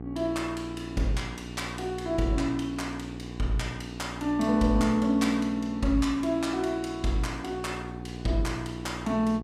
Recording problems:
electrical hum; 60 Hz, harmonics up to 1.1 kHz, SNR 11 dB

